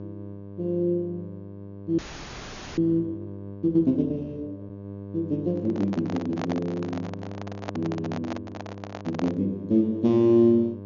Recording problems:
treble missing; nothing above 6.9 kHz
electrical hum; 50 Hz, harmonics up to 1.1 kHz, SNR 14 dB
frozen audio; at 2 s for 1 s
handling noise; from 5.5 to 9.5 s; peak -3 dB vs average level

